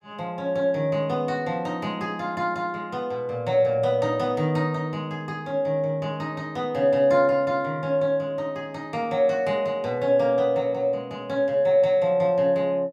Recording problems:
none

